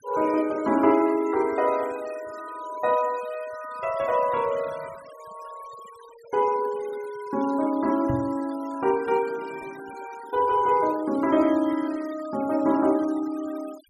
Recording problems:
noise reduction artefacts; signal-to-artefact ratio 21 dB
knock on the microphone; at 8 s; peak -2 dB vs average level

